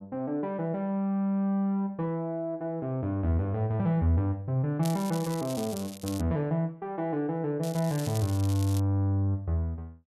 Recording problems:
crackle; from 5 to 6 s and from 7.5 to 9 s; loose cable, SNR 14 dB

